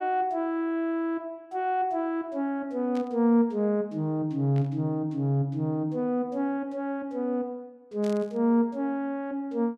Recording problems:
burst of static; at 3 s, at 4.5 s and at 8 s; peak -14 dB vs average level

